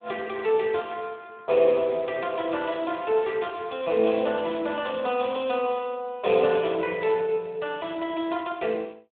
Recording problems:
telephone audio; 240 Hz to 3.4 kHz, Speex

